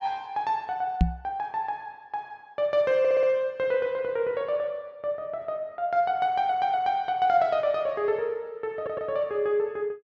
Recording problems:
microphone thump; at 1 s; peak +8 dB vs average level
audio stuttering; at 3 s, at 6.5 s and at 9 s

